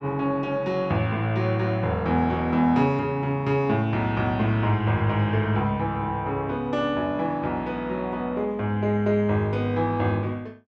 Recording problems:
none

